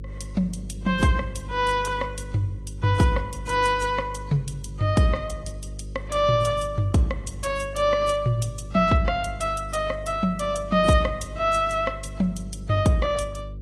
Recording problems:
lossy codec; AAC, log-spectral distance 3 dB, nothing above 11.6 kHz
hum; 50 Hz, harmonics up to 450 Hz, SNR 13 dB

